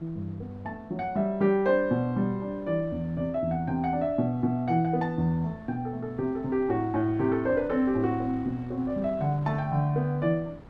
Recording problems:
wind on the microphone; below 510 Hz, SNR 22 dB

